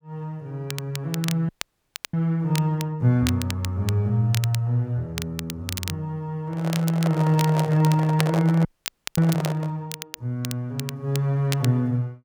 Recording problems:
crackling; vinyl, SNR 12 dB
frozen audio; at 1.5 s for 0.5 s and at 8.5 s for 0.5 s
microphone handling noise; from 6.5 to 9.5 s; peak -2 dB vs average level

